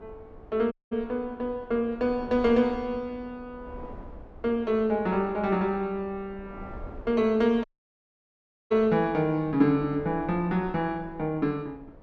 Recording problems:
wind on the microphone; below 430 Hz, SNR 20 dB
dropout; at 0.5 s and at 7.5 s for 1 s

